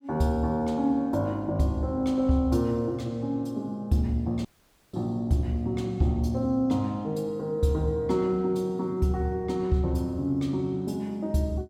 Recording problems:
dropout; at 4.5 s

